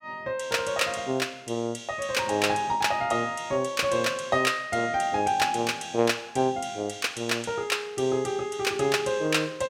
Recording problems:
none

